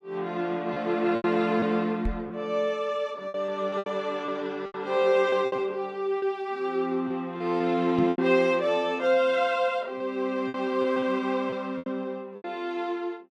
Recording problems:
packet loss; 8% of the sound replaced, filled with repeated pitch periods
microphone bump; at 2 s and at 8 s; peak +1 dB vs average level

